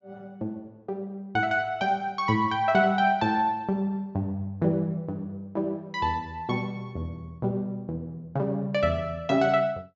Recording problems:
treble missing; nothing above 8 kHz

